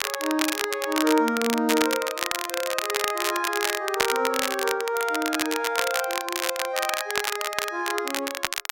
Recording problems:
crackle; vinyl, SNR 2 dB

